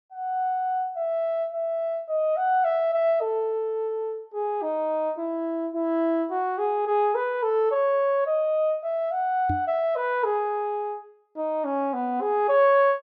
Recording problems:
microphone bump; at 9.5 s; peak -1 dB vs average level

